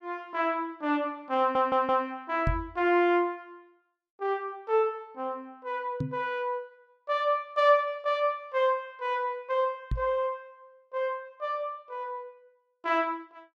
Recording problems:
stutter; at 1.5 s
microphone thump; at 2.5 s, at 6 s and at 10 s; peak +3 dB vs average level

